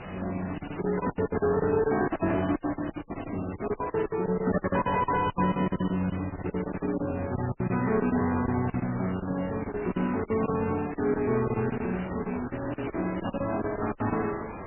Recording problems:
lossy compression; MP3, then MP3, log-spectral distance 10 dB, nothing above 2.5 kHz
distortion; soft clipping, signal-to-distortion ratio 7 dB
hiss; SNR 8 dB
lost packets; 18% of the sound replaced, filled with silence

